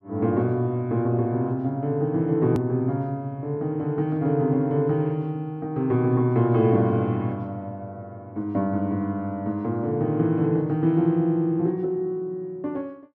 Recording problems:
hard cut with a click; at 2.5 s

